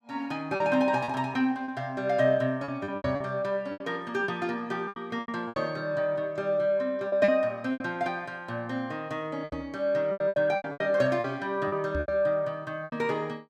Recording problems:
packet loss; 11% of the sound replaced, filled with repeated pitch periods
microphone bump; at 3 s, at 9.5 s and at 12 s; peak -1 dB vs average level

